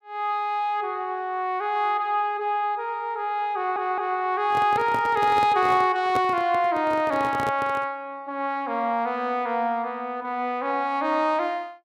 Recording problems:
stutter; at 3.5 s
handling noise; from 4.5 to 8 s; peak -2 dB vs average level

